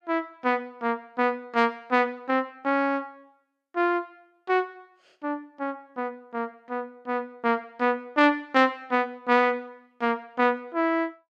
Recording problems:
none

